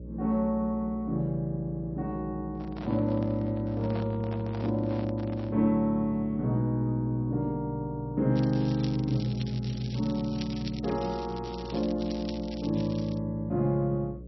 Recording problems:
lossy codec; MP3, log-spectral distance 3 dB
electrical hum; 60 Hz, harmonics up to 600 Hz, SNR 14 dB
handling noise; from 2.5 to 5.5 s; peak -8 dB vs average level
crackle; from 8.5 to 13 s; loose cable, SNR 16 dB

